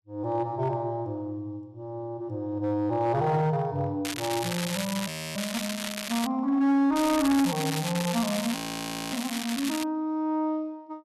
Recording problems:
distorted audio; hard clipping, signal-to-distortion ratio 10 dB
crackle; from 4 to 6.5 s and from 7 to 10 s; loose cable, SNR 5 dB
audio freezing; at 5 s and at 8.5 s for 0.5 s

